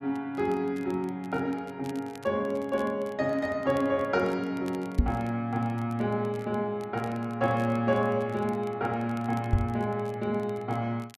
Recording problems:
crackling; vinyl, SNR 26 dB
microphone thump; at 5 s and at 9.5 s; peak +10 dB vs average level

